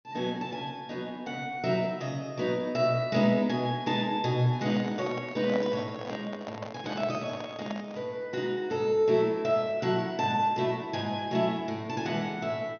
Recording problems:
treble missing; nothing above 6.4 kHz
microphone handling noise; from 4.5 to 8 s; peak -2 dB vs average level

